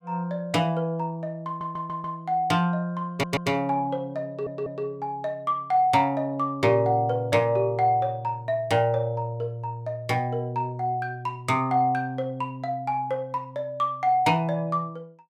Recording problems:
audio stuttering; at 1.5 s, at 3 s and at 4.5 s

